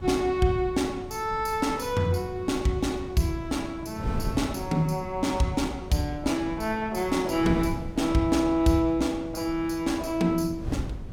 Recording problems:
wind on the microphone; below 210 Hz, SNR 12 dB

